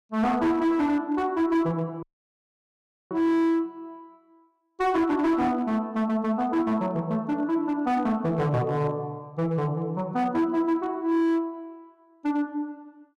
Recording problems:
distortion; hard clipping, signal-to-distortion ratio 10 dB
dropout; at 2 s for 1 s

